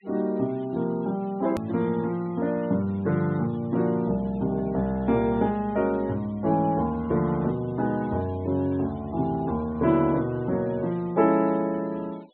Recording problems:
treble missing; nothing above 4 kHz
noise reduction artefacts; signal-to-artefact ratio 27 dB
edit click; at 1.5 s

